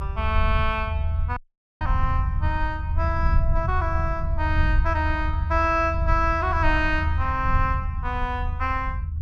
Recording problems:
rumble; below 80 Hz, SNR 0 dB
dropout; at 1.5 s

